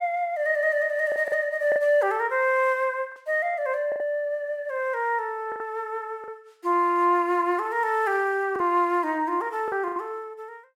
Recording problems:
packet loss; 5% of the sound replaced, filled with the last packet

